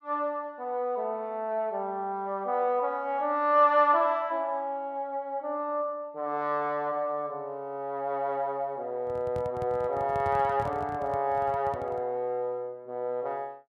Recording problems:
microphone handling noise; from 9 to 12 s; peak -6 dB vs average level

